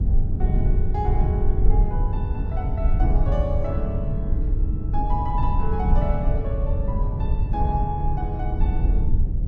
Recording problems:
rumble; below 80 Hz, SNR -6 dB

